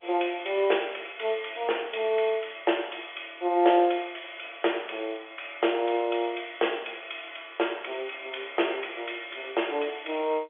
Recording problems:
phone line; 300 Hz to 3.5 kHz, G.711

